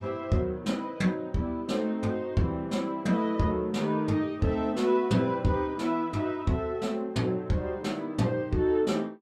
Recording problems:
none

